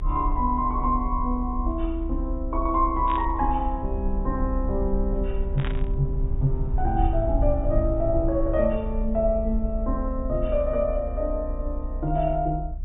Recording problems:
low-pass filter; nothing above 4 kHz
low-frequency rumble; below 62 Hz, strongest tone 34 Hz, SNR 4 dB
burst of static; at 3 s and at 5.5 s; peak -5 dB vs average level

